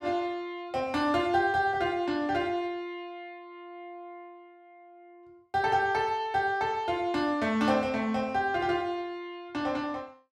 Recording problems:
none

